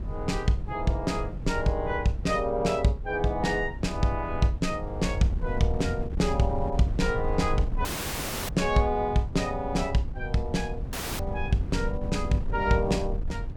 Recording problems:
wind noise; below 98 Hz, SNR 7 dB
dropout; at 8 s for 0.5 s and at 11 s

